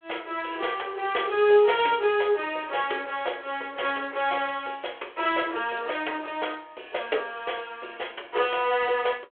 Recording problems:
phone line; 320 Hz to 3.4 kHz, G.726

